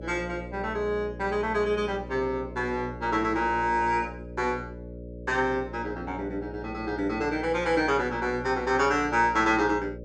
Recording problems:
hum; 60 Hz, harmonics up to 600 Hz, SNR 13 dB

